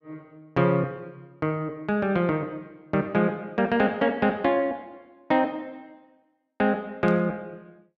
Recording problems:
static burst; at 7 s; peak -15 dB vs average level

